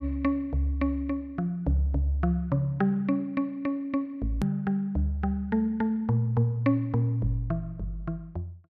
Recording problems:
hard cut with a click; at 4.5 s

